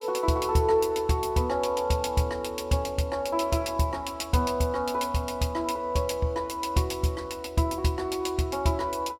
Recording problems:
none

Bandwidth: 17 kHz